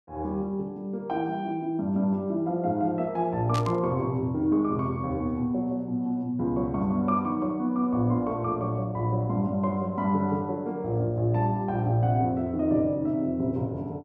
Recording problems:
burst of static; at 3.5 s; peak -6 dB vs average level

